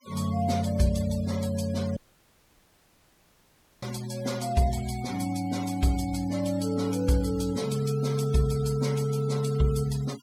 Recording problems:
denoising artefacts; signal-to-artefact ratio 17 dB
dropout; at 2 s for 2 s

